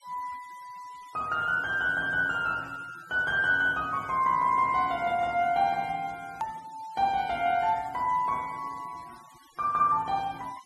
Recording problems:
denoising artefacts; signal-to-artefact ratio 25 dB
click at an edit; at 6.5 s

